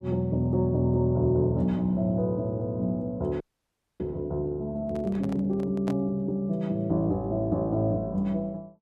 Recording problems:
audio freezing; at 3.5 s for 0.5 s
handling noise; from 5 to 6 s; peak -6 dB vs average level

